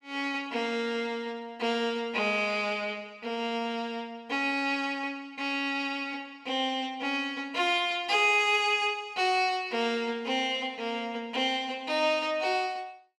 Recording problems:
none

